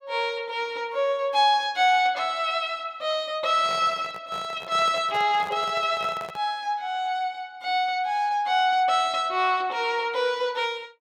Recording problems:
microphone handling noise; from 3.5 to 6.5 s; peak -9 dB vs average level

